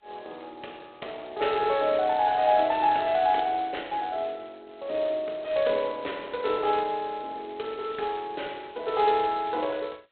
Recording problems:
telephone audio; 340 Hz to 4 kHz, G.726

